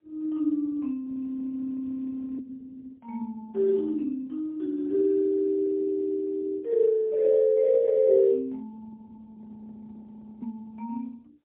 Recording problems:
phone line; 260 Hz to 2.1 kHz, AMR-NB, then MP3
audio freezing; at 1 s for 1.5 s and at 9.5 s for 1 s

